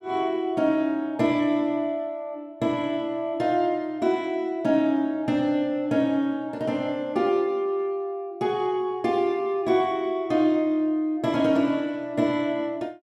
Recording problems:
none

